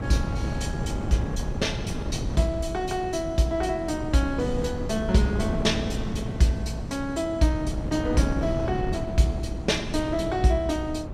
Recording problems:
wind noise; below 270 Hz, SNR 5 dB

